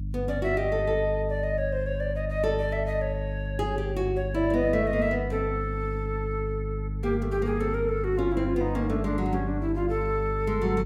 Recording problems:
hum; 50 Hz, harmonics up to 300 Hz, SNR 5 dB

